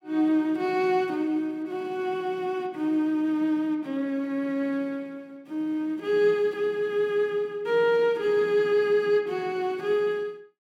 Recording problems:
none

